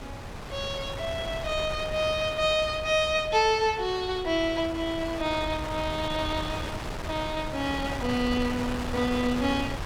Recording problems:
wind on the microphone; below 1.2 kHz, SNR 8 dB

